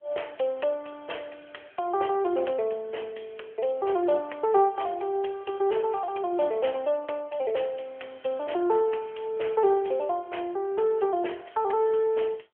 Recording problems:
telephone audio; 320 Hz to 3.3 kHz, AMR-NB

